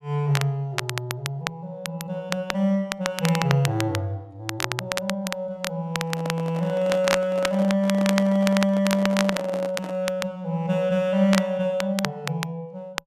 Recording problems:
crackling; vinyl, SNR 7 dB
handling noise; from 6 to 10 s; peak -4 dB vs average level

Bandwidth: 14 kHz